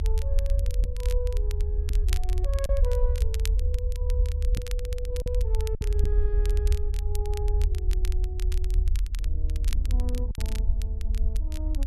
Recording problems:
low-frequency rumble; below 70 Hz, SNR -11 dB
wind noise; below 240 Hz, SNR 15 dB
crackling; vinyl, SNR 6 dB
lost packets; 2% of the sound replaced, filled with silence

